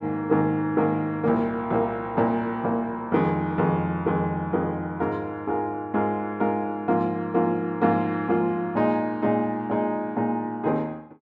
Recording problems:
none

